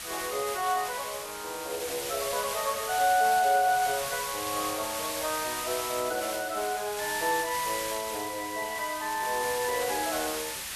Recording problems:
hiss; slope +2 dB per octave, SNR 5 dB

